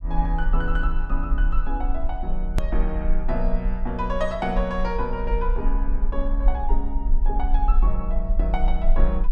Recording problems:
low-frequency rumble; below 42 Hz, strongest tone 22 Hz, SNR -3 dB
hard cut with a click; at 2.5 s

